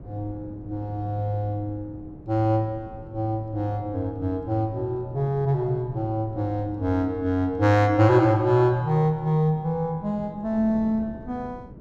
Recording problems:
wind noise; below 280 Hz, SNR 19 dB

